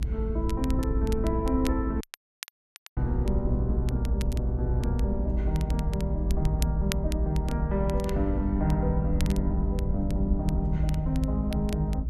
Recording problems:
rumble; below 70 Hz, strongest tone 54 Hz, SNR -1 dB
crackling; vinyl, SNR 15 dB
audio cutting out; at 2 s for 1 s

